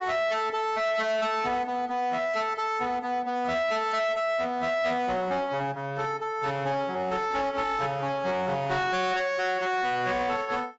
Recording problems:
lossy codec; AAC, log-spectral distance 2 dB, nothing above 7.6 kHz
distorted audio; hard clipping, signal-to-distortion ratio 10 dB

